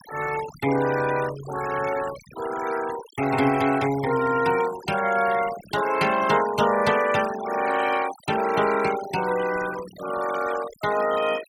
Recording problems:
noise reduction artefacts; signal-to-artefact ratio 13 dB

